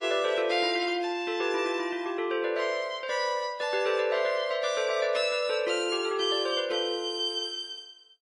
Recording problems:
codec artefacts; MP3, log-spectral distance 2 dB, nothing above 9.8 kHz

